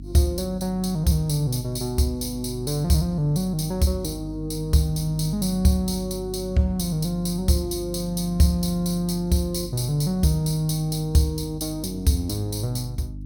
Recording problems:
hum; 50 Hz, harmonics up to 300 Hz, SNR 13 dB

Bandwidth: 17.5 kHz